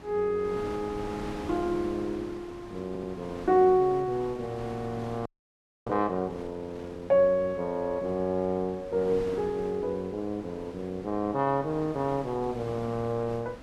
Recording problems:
wind noise; below 1 kHz, SNR 15 dB
stutter; at 3 s
frozen audio; at 5.5 s for 0.5 s

